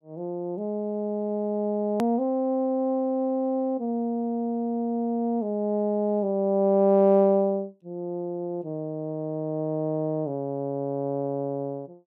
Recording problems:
edit click; at 2 s

